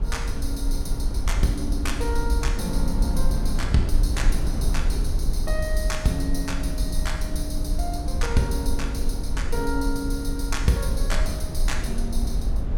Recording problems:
low-frequency rumble; below 54 Hz, SNR -2 dB

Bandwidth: 17 kHz